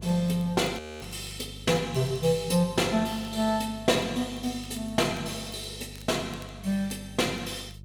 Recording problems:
mains hum; 50 Hz, harmonics up to 400 Hz, SNR 16 dB
crackle; vinyl, SNR 28 dB
audio freezing; at 1 s

